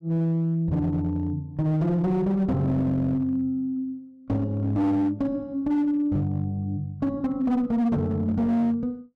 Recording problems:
distorted audio; hard clipping, signal-to-distortion ratio 12 dB

